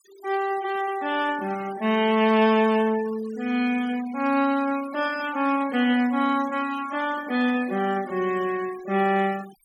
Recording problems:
denoising artefacts; signal-to-artefact ratio 19 dB

